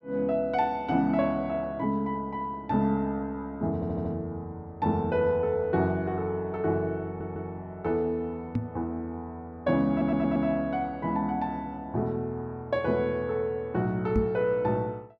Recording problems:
stutter; at 4 s, at 7 s and at 10 s
knock on the microphone; at 8.5 s and at 14 s; peak +5 dB vs average level

